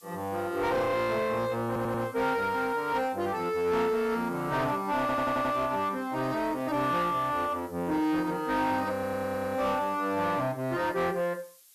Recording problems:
distortion; soft clipping, signal-to-distortion ratio 11 dB
background hiss; SNR 25 dB
stutter; at 1.5 s, at 5 s and at 9 s

